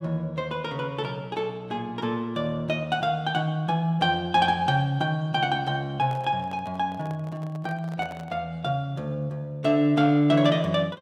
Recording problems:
microphone handling noise; from 6 to 8.5 s; peak -10 dB vs average level

